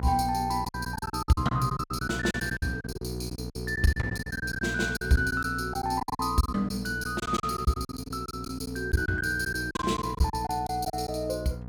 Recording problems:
hum; 60 Hz, harmonics up to 960 Hz, SNR 9 dB
packet loss; 15% of the sound replaced, filled with silence

